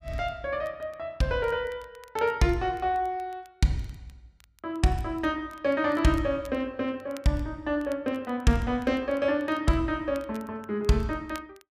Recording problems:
crackle; vinyl, SNR 27 dB

